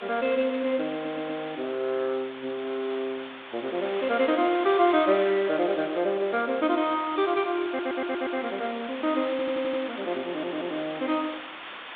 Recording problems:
telephone audio; 220 Hz to 3.9 kHz, G.726
hiss; SNR 12 dB
audio stuttering; 4 times, first at 1 s

